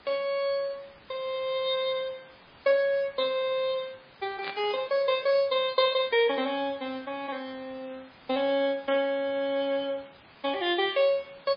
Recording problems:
lossy compression; MP3, log-spectral distance 7 dB, nothing above 5 kHz
hiss; SNR 25 dB
burst of static; at 4.5 s; peak -4 dB vs average level

